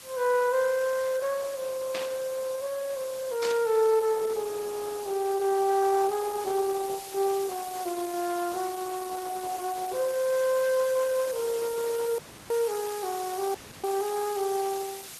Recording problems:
codec artefacts; Opus, log-spectral distance 7 dB
hiss; slope 0 dB per octave, SNR 14 dB
static burst; at 2 s and at 3.5 s; peak -3 dB vs average level
audio cutting out; at 12 s and at 14 s

